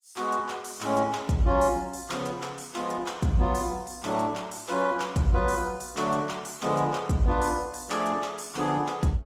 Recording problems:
lossy compression; Opus, log-spectral distance 5 dB

